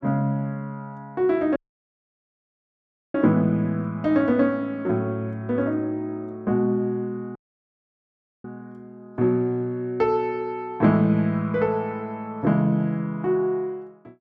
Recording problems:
dropout; at 1.5 s for 1.5 s and at 7.5 s for 1 s

